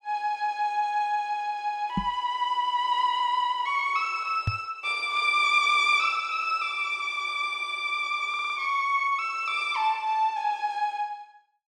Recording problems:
microphone bump; at 2 s and at 4.5 s; peak +2 dB vs average level
audio stuttering; at 8.5 s

